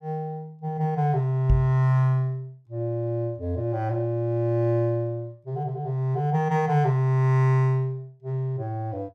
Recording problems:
microphone bump; at 1.5 s; peak +6 dB vs average level

